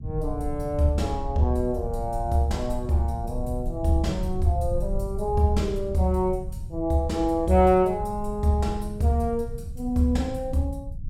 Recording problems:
rumble; below 86 Hz, SNR 9 dB

